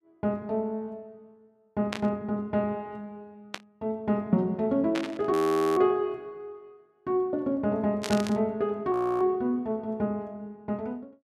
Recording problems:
static burst; 4 times, first at 2 s; peak -1 dB vs average level
audio freezing; at 5.5 s and at 9 s

